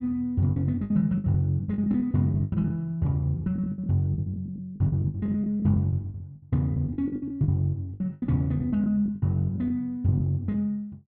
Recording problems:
packet loss; 17% of the sound replaced, filled with the last packet

